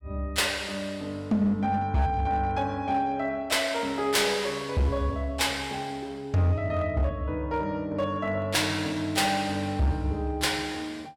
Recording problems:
distorted audio; hard clipping, uneven, signal-to-distortion ratio 12 dB

